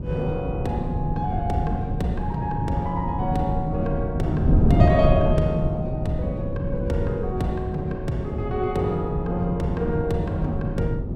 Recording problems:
wind on the microphone; below 190 Hz, SNR 1 dB

